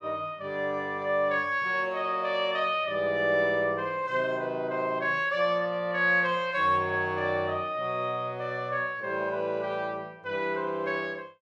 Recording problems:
none

